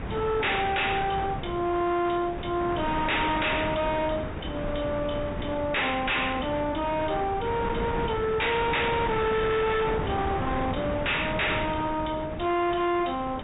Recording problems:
treble cut off; nothing above 3.8 kHz
codec artefacts; MP2, log-spectral distance 5 dB
distorted audio; hard clipping, uneven, signal-to-distortion ratio 5 dB
wind on the microphone; below 890 Hz, SNR 7 dB

